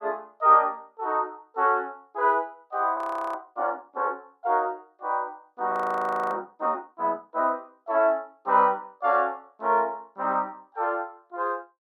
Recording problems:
audio freezing; at 3 s and at 5.5 s for 0.5 s

